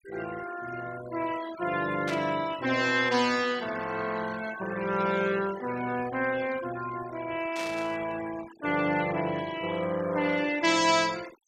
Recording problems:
denoising artefacts; signal-to-artefact ratio 16 dB
burst of static; at 2 s and at 7.5 s; peak -4 dB vs average level

